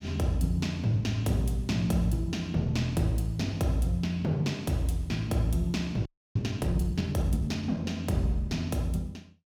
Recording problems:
audio freezing; at 6 s

